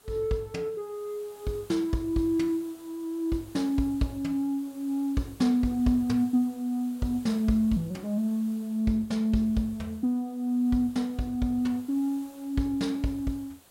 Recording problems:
background hiss; SNR 25 dB

